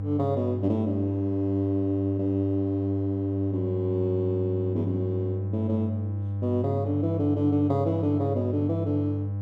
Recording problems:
hum; 50 Hz, harmonics up to 500 Hz, SNR 3 dB

